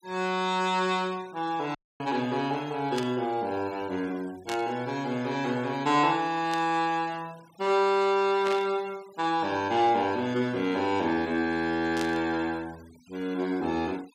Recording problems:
noise reduction artefacts; signal-to-artefact ratio 23 dB
dropout; at 2 s
static burst; 5 times, first at 3 s; peak -4 dB vs average level

